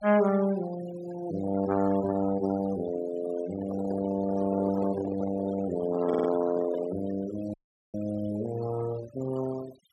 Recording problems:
noise reduction artefacts; signal-to-artefact ratio 14 dB
handling noise; from 3.5 to 7 s; peak -2 dB vs average level
stutter; at 6 s
audio cutting out; at 7.5 s

